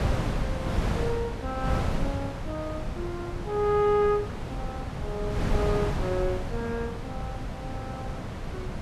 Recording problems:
wind on the microphone; below 330 Hz, SNR 2 dB

